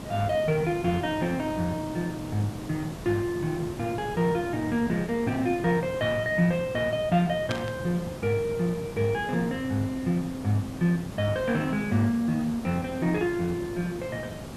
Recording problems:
background hiss; slope -6 dB per octave, SNR 11 dB
static burst; at 7.5 s; peak -2 dB vs average level

